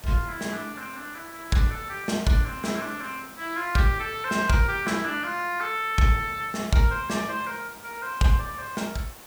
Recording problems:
background hiss; slope -3 dB per octave, SNR 18 dB

